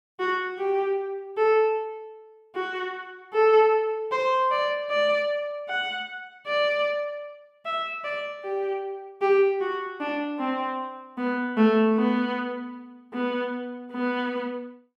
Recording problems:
none

